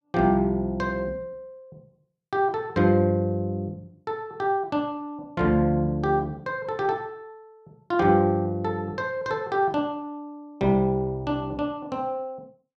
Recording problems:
none

